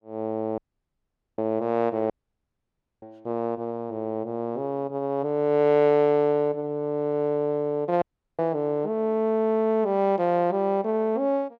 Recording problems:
dropout; at 0.5 s for 1 s, at 2 s for 1 s and at 8 s

